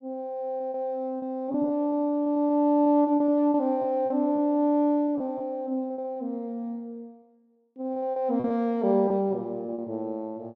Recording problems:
packet loss; 9% of the sound replaced, filled with repeated pitch periods

